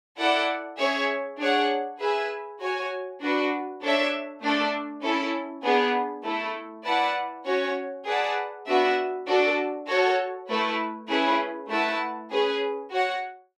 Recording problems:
none

